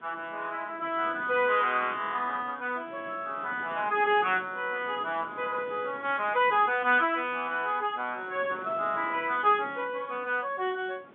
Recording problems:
telephone audio; 190 Hz to 3.6 kHz, G.711
wind noise; below 1.1 kHz, SNR 22 dB

